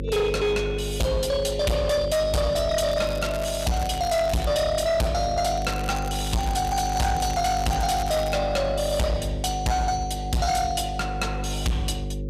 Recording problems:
distorted audio; hard clipping, signal-to-distortion ratio 6 dB
electrical hum; 50 Hz, harmonics up to 550 Hz, SNR 8 dB
crackling; from 3 to 4.5 s and from 5.5 to 8.5 s; loose cable, SNR 15 dB

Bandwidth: 14.5 kHz